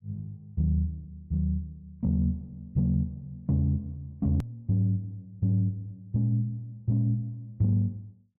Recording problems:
click at an edit; at 4.5 s

